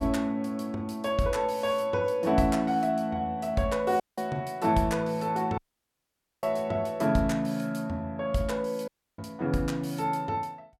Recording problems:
dropout; at 4 s, at 5.5 s for 1 s and at 9 s

